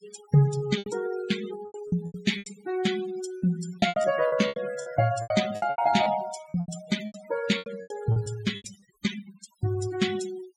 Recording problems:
noise reduction artefacts; signal-to-artefact ratio 11 dB
lost packets; 15% of the sound replaced, filled with repeated pitch periods

